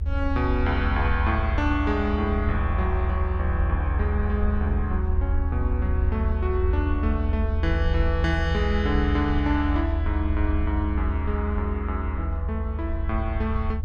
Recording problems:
rumble; below 78 Hz, SNR -2 dB

